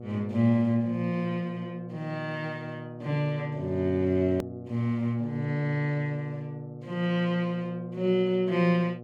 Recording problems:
hum; 60 Hz, harmonics up to 840 Hz, SNR 14 dB
edit click; at 4.5 s

